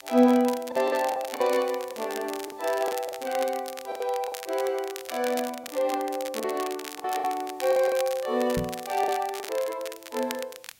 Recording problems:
background hiss; slope +1 dB per octave, SNR 30 dB
crackle; vinyl, SNR 12 dB
lost packets; 8% of the sound replaced, filled with the last packet
microphone thump; at 8.5 s; peak +1 dB vs average level

